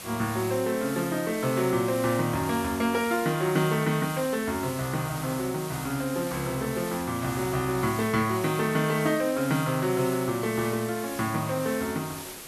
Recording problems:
background hiss; slope -2 dB per octave, SNR 11 dB

